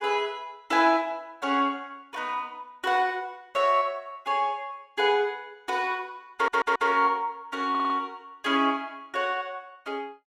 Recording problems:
stutter; at 6.5 s and at 7.5 s

